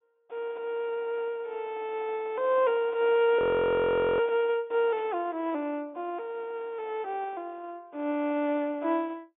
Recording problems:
low-pass filter; nothing above 3.5 kHz
audio freezing; at 3.5 s for 1 s
burst of static; at 5 s; peak -19 dB vs average level

